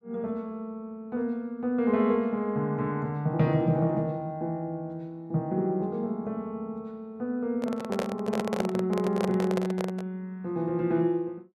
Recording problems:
microphone handling noise; from 7.5 to 10 s; peak +2 dB vs average level

